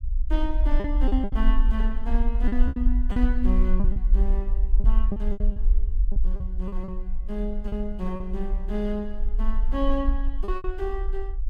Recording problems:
rumble; below 44 Hz, SNR -5 dB
packet loss; 9% of the sound replaced, filled with repeated pitch periods

